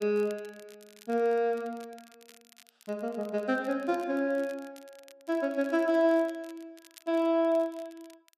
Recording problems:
crackle; vinyl, SNR 27 dB

